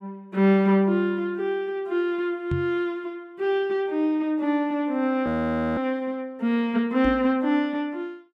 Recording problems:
knock on the microphone; at 2.5 s and at 7 s; peak 0 dB vs average level
frozen audio; at 5.5 s for 0.5 s

